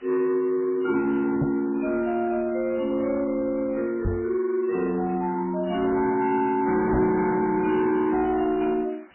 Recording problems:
codec artefacts; MP3, then AAC, log-spectral distance 5 dB, nothing above 2.4 kHz
distortion; soft clipping, signal-to-distortion ratio 11 dB
hiss; SNR 28 dB
microphone bump; at 1.5 s, at 4 s and at 7 s; peak +3 dB vs average level

